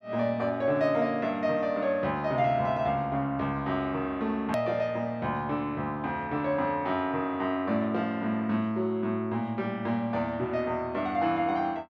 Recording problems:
click at an edit; at 4.5 s

